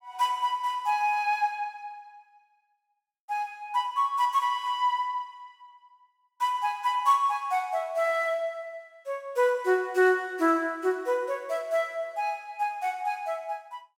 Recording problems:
none

